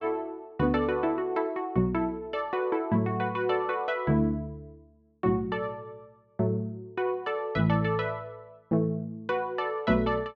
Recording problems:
none

